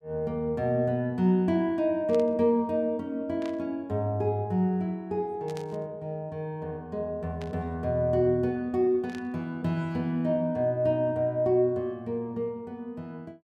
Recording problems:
burst of static; 5 times, first at 2 s; peak -12 dB vs average level

